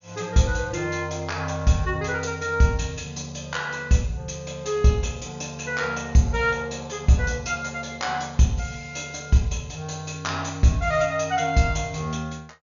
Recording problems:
treble cut off; nothing above 7 kHz

